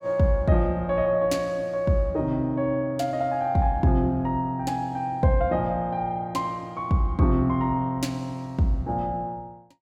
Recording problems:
none

